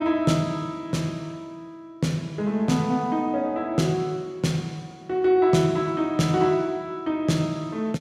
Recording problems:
none

